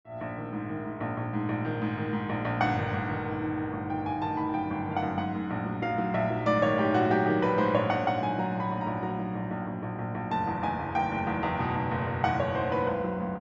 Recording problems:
treble missing; nothing above 8 kHz

